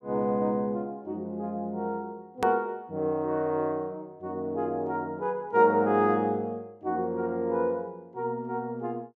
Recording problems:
edit click; at 2.5 s

